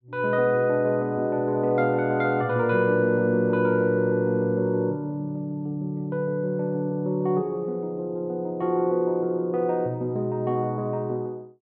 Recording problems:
none

